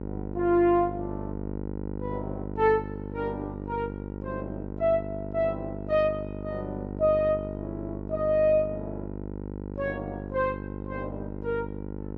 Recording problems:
electrical hum; 50 Hz, harmonics up to 1 kHz, SNR 8 dB

